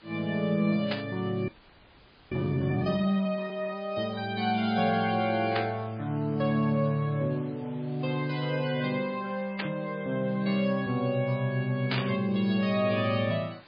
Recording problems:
lossy compression; MP3, log-spectral distance 5 dB, nothing above 5 kHz
background hiss; SNR 26 dB
burst of static; 4 times, first at 1 s; peak +1 dB vs average level
audio freezing; at 1.5 s for 1 s

